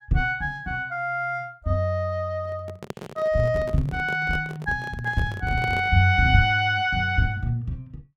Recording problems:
microphone handling noise; from 2.5 to 6 s; peak -5 dB vs average level

